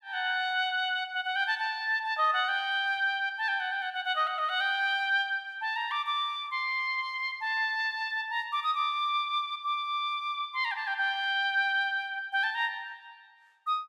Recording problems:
none

